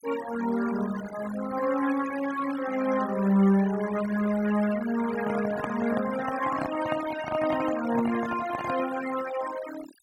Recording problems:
denoising artefacts; signal-to-artefact ratio 12 dB
microphone handling noise; from 5 to 9 s; peak -2 dB vs average level

